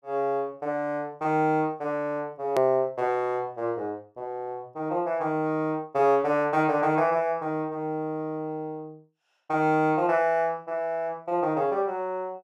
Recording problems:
hard cut with a click; at 2.5 s

